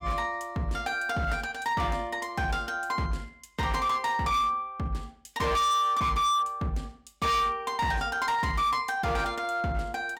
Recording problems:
distorted audio; hard clipping, signal-to-distortion ratio 7 dB

